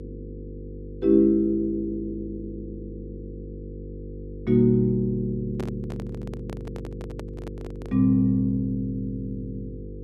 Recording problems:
mains hum; 50 Hz, harmonics up to 500 Hz, SNR 14 dB
microphone handling noise; from 5.5 to 8 s; peak -7 dB vs average level

